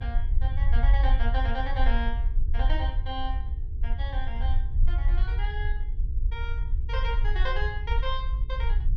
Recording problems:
hum; 50 Hz, harmonics up to 450 Hz, SNR 22 dB
low-frequency rumble; below 56 Hz, SNR -7 dB

